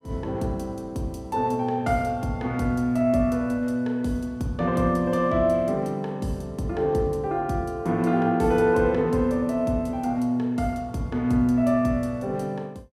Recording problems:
none

